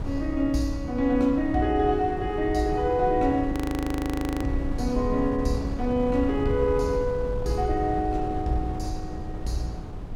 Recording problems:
wind on the microphone; below 150 Hz, SNR 8 dB
frozen audio; at 3.5 s for 1 s

